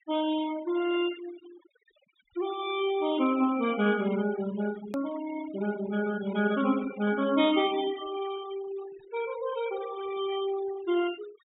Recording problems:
treble missing; nothing above 4 kHz
noise reduction artefacts; signal-to-artefact ratio 14 dB
hard cut with a click; at 5 s

